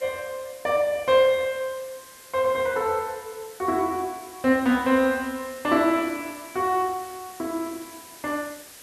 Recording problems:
background hiss; slope -1 dB per octave, SNR 19 dB

